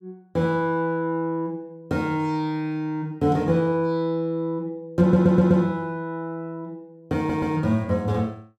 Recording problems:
audio stuttering; at 5 s and at 7 s

